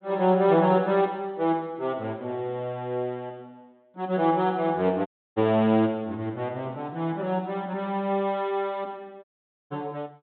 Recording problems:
low-pass filter; nothing above 4 kHz
dropout; at 5 s and at 9 s

